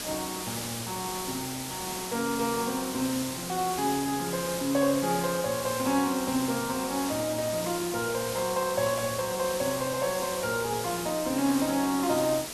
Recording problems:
background hiss; slope -2 dB per octave, SNR 5 dB

